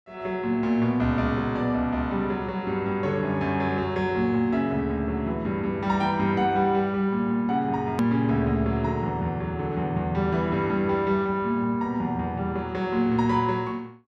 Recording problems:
hard cut with a click; at 8 s

